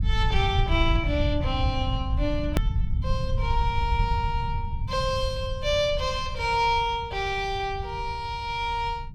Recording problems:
low-frequency rumble; below 100 Hz, SNR 3 dB
edit click; at 2.5 s

